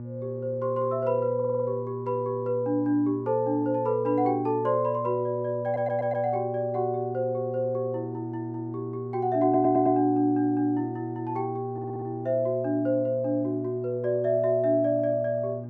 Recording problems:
electrical hum; 60 Hz, harmonics up to 600 Hz, SNR 11 dB
stutter; 4 times, first at 1.5 s

